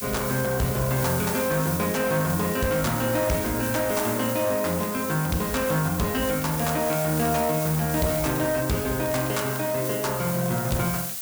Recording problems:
distortion; hard clipping, uneven, signal-to-distortion ratio 11 dB
background hiss; slope +2 dB per octave, SNR 5 dB
crackling; vinyl, SNR 24 dB

